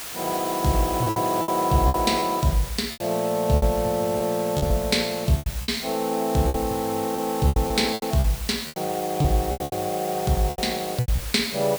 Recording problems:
background hiss; slope 0 dB per octave, SNR 11 dB
packet loss; 11% of the sound replaced, filled with repeated pitch periods

